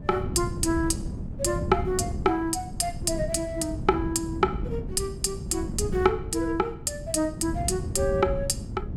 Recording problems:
wind noise; below 190 Hz, SNR 7 dB

